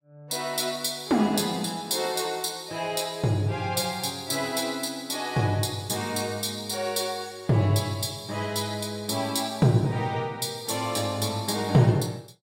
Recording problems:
none

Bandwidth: 16 kHz